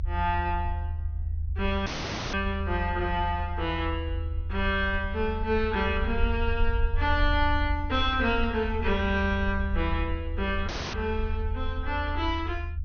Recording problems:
treble cut off; nothing above 6.3 kHz
rumble; below 80 Hz, SNR 3 dB
audio cutting out; at 2 s and at 11 s

